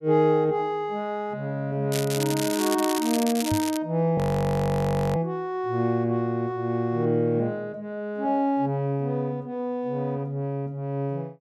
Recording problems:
crackling; from 2 to 4 s; loose cable, SNR 6 dB
microphone thump; at 3.5 s; peak 0 dB vs average level
audio freezing; at 4 s for 1 s

